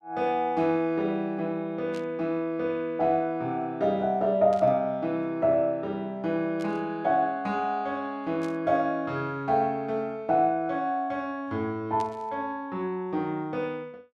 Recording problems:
static burst; 5 times, first at 2 s; peak -13 dB vs average level

